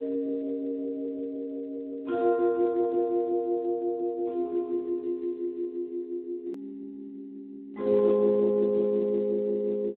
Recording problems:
phone line; 710 Hz to 2 kHz, Speex
edit click; at 6.5 s

